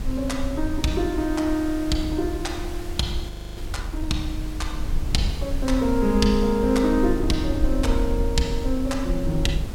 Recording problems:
background hiss; slope -3 dB per octave, SNR 17 dB
rumble; below 62 Hz, SNR 6 dB
frozen audio; at 3.5 s

